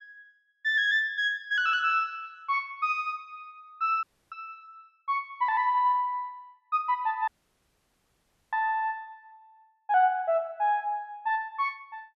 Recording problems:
audio cutting out; at 4 s and at 7.5 s for 1 s

